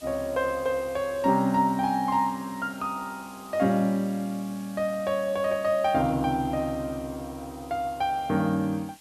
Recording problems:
background hiss; slope +1 dB per octave, SNR 22 dB

